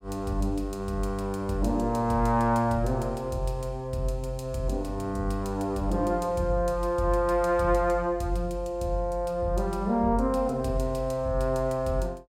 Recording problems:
none

